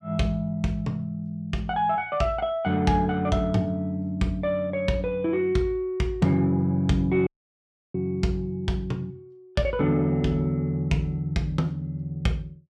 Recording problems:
audio cutting out; at 7.5 s for 0.5 s

